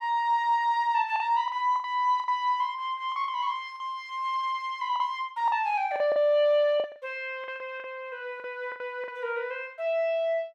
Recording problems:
packet loss; 8% of the sound replaced, filled with the last packet

